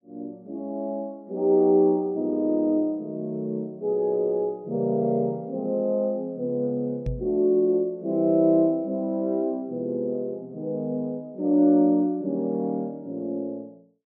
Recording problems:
knock on the microphone; at 7 s; peak -1 dB vs average level

